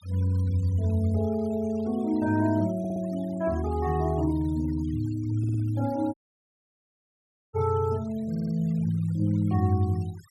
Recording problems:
denoising artefacts; signal-to-artefact ratio 25 dB
audio stuttering; at 3 s, at 5.5 s and at 8.5 s
audio cutting out; at 6 s for 1.5 s

